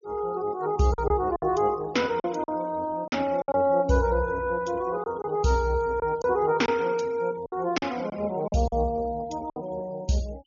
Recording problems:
treble cut off; nothing above 6.9 kHz
noise reduction artefacts; signal-to-artefact ratio 24 dB
packet loss; 7% of the sound replaced, filled with silence

